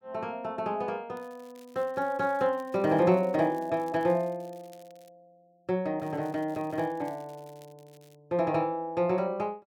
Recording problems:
crackle; from 1 to 5 s and from 6 to 8 s; loose cable, SNR 30 dB

